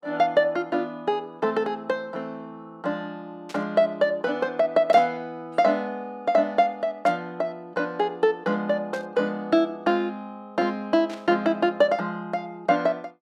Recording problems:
static burst; 5 times, first at 3.5 s; peak -12 dB vs average level

